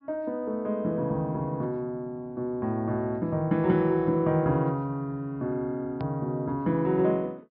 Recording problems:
treble missing; nothing above 5.5 kHz
click at an edit; at 6 s

